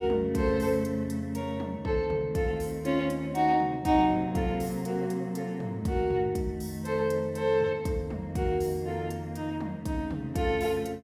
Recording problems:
none

